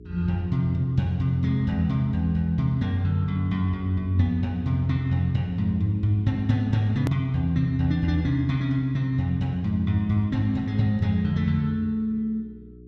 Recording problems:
hum; 60 Hz, harmonics up to 420 Hz, SNR 20 dB
click at an edit; at 7 s

